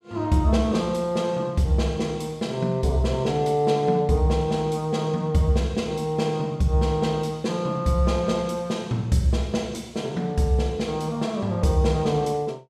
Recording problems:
none

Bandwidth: 15 kHz